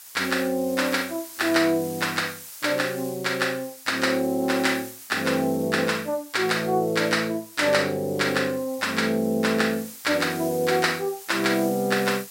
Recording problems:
background hiss; slope +3 dB per octave, SNR 16 dB

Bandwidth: 16 kHz